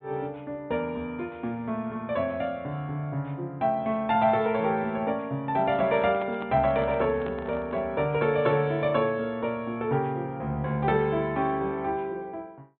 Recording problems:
treble cut off; nothing above 4 kHz
handling noise; from 6 to 8 s; peak -8 dB vs average level

